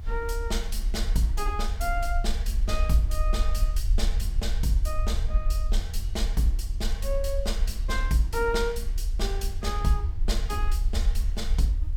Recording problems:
hiss; slope -3 dB per octave, SNR 30 dB
rumble; below 54 Hz, strongest tone 34 Hz, SNR -1 dB

